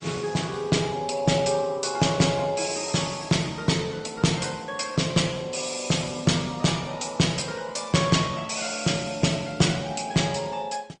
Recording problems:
codec artefacts; MP2, then Opus, log-spectral distance 6 dB, nothing above 8.5 kHz

